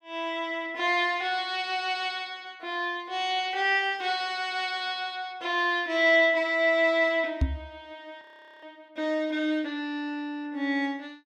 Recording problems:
knock on the microphone; at 7.5 s; peak +5 dB vs average level
audio freezing; at 8 s

